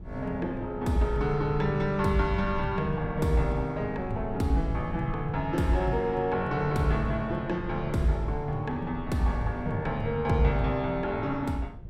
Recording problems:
rumble; below 110 Hz, SNR 13 dB

